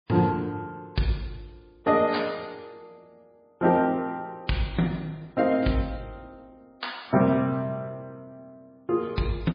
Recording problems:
lossy codec; MP3, log-spectral distance 3 dB, nothing above 4.8 kHz

